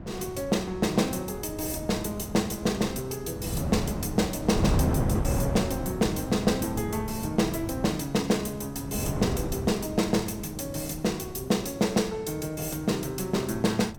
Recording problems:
wind noise; below 270 Hz, SNR 6 dB

